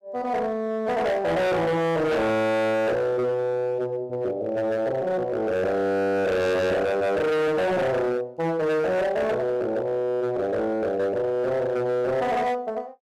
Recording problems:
distorted audio; hard clipping, signal-to-distortion ratio 6 dB

